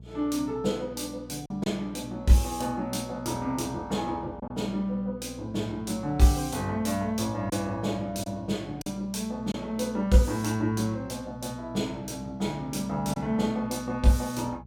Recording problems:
hum; 60 Hz, harmonics up to 480 Hz, SNR 18 dB
lost packets; 1.5% of the sound replaced, filled with silence

